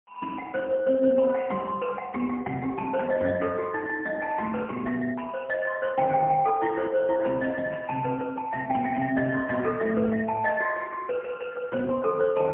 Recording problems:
phone line; 220 Hz to 2.7 kHz, AMR-NB, then MP3

